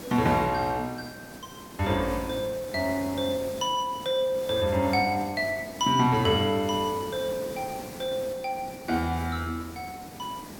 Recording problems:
hiss; SNR 14 dB

